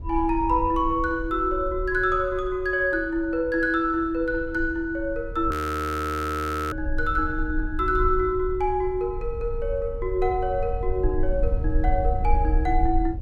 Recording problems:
rumble; below 60 Hz, SNR 7 dB
audio freezing; at 5.5 s for 1 s

